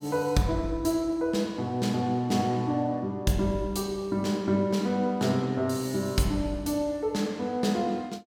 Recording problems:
none

